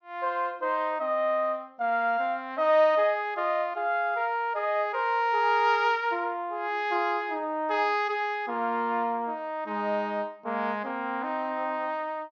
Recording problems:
treble cut off; nothing above 6.7 kHz

